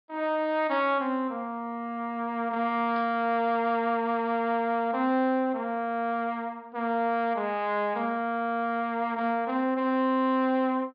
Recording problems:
treble cut off; nothing above 5.2 kHz
static burst; at 3 s; peak -16 dB vs average level

